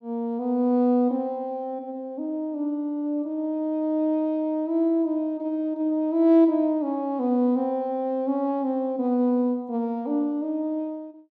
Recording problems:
none

